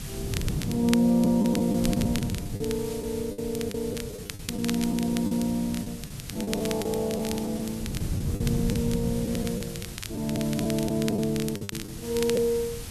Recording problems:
hiss; slope +1 dB per octave, SNR 14 dB
wind noise; below 190 Hz, SNR 8 dB
crackle; vinyl, SNR 12 dB
packet loss; 9% of the sound replaced, filled with the last packet

